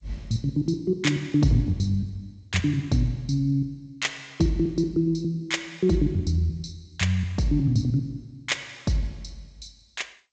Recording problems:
lossy codec; G.722, log-spectral distance 3 dB, nothing above 7.6 kHz

